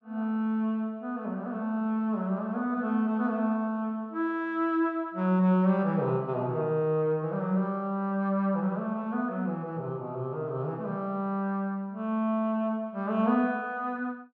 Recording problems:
none

